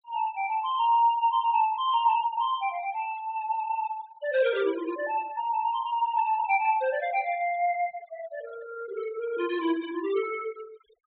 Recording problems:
low-pass filter; nothing above 4 kHz
noise reduction artefacts; signal-to-artefact ratio 19 dB

